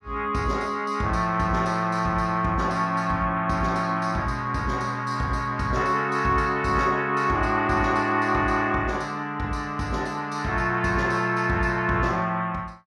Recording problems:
none

